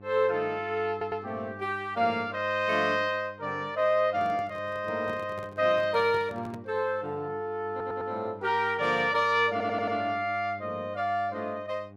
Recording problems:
mains hum; 50 Hz, harmonics up to 1.2 kHz, SNR 19 dB
stutter; at 1 s, at 7.5 s and at 9.5 s
handling noise; from 4 to 6.5 s; peak -11 dB vs average level

